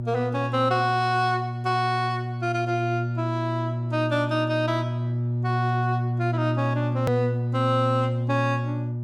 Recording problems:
hum; 60 Hz, harmonics up to 600 Hz, SNR 2 dB
hard cut with a click; at 7 s

